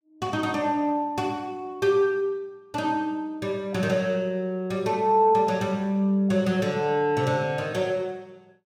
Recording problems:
none

